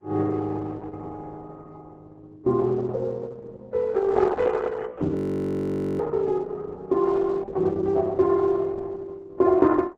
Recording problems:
lossy codec; Vorbis, then Opus, log-spectral distance 3 dB, nothing above 13.1 kHz
frozen audio; at 5 s for 1 s

